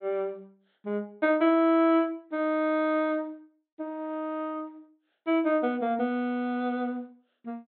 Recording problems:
treble cut off; nothing above 4 kHz

